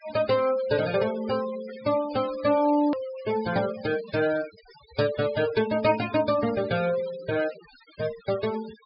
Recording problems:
low-pass filter; nothing above 5.5 kHz
noise reduction artefacts; signal-to-artefact ratio 16 dB
click at an edit; at 3 s

